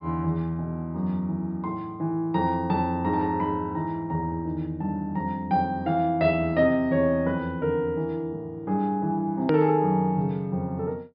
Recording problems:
treble missing; nothing above 5.2 kHz
edit click; at 9.5 s

